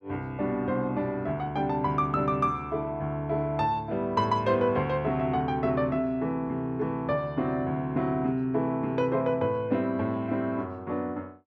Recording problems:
none

